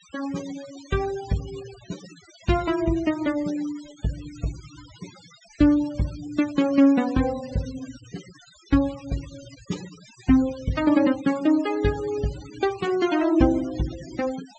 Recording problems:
low-pass filter; nothing above 8 kHz
noise reduction artefacts; signal-to-artefact ratio 19 dB

